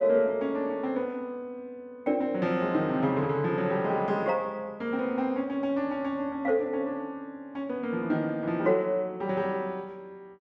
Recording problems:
none

